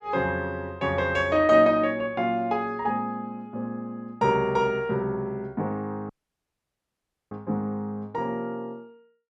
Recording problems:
audio cutting out; at 6 s for 1 s

